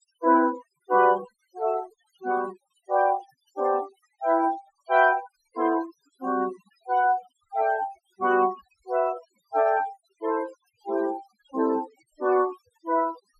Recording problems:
denoising artefacts; signal-to-artefact ratio 18 dB

